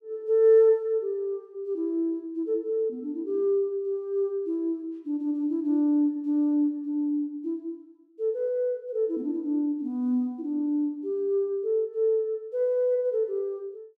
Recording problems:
none

